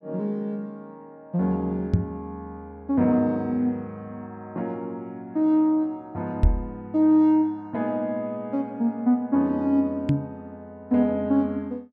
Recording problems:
knock on the microphone; at 2 s, at 6.5 s and at 10 s; peak +8 dB vs average level

